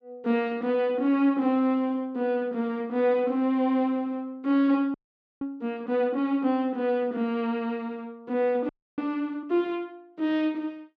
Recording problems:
audio freezing; at 5 s and at 8.5 s

